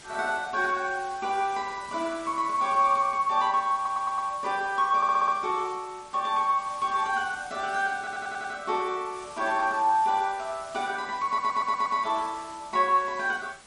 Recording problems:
codec artefacts; MP3, log-spectral distance 5 dB
hiss; slope -1 dB per octave, SNR 20 dB
audio stuttering; 4 times, first at 4 s

